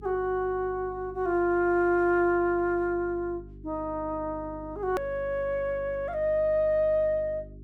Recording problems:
hum; 50 Hz, harmonics up to 400 Hz, SNR 19 dB
click at an edit; at 5 s

